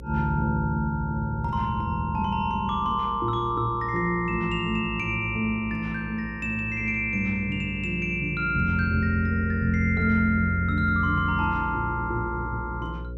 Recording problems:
hum; 60 Hz, harmonics up to 540 Hz, SNR 14 dB

